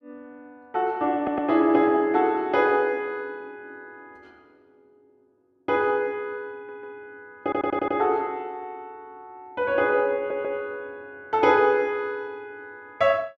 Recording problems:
audio stuttering; 4 times, first at 1 s

